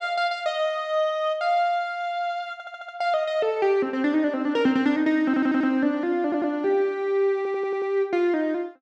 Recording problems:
audio stuttering; 4 times, first at 2.5 s

